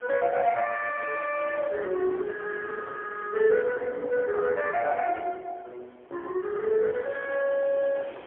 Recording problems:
telephone audio; 300 Hz to 2.9 kHz, AMR-NB, then MP3
wind noise; below 1.4 kHz, SNR 22 dB

